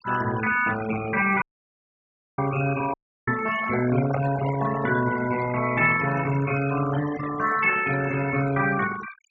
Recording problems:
low-pass filter; nothing above 8 kHz
noise reduction artefacts; signal-to-artefact ratio 11 dB
audio cutting out; at 1.5 s for 1 s and at 3 s
microphone handling noise; from 3.5 to 5 s; peak -2 dB vs average level

